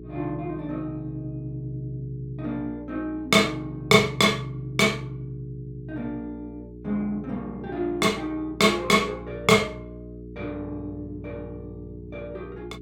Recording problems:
electrical hum; 60 Hz, harmonics up to 420 Hz, SNR 16 dB

